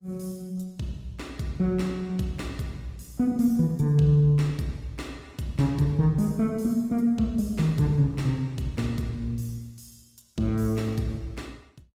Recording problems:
lossy compression; Opus, log-spectral distance 2 dB

